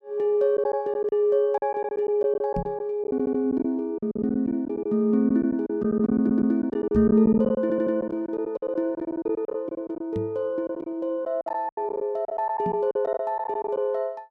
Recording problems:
packet loss; 13% of the sound replaced, filled with silence
microphone thump; 4 times, first at 2.5 s; peak -2 dB vs average level
audio stuttering; at 3 s, at 6 s and at 7.5 s

